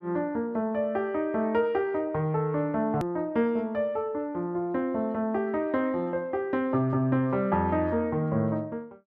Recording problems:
hard cut with a click; at 3 s

